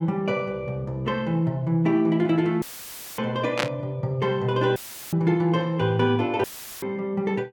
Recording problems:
dropout; at 2.5 s for 0.5 s, at 5 s and at 6.5 s; filled with static
burst of static; at 3.5 s; peak +4 dB vs average level

